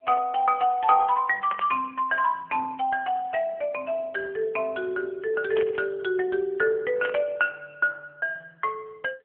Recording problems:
telephone audio; 300 Hz to 3 kHz, AMR-NB
static burst; at 1.5 s, at 5.5 s and at 7 s; peak -3 dB vs average level

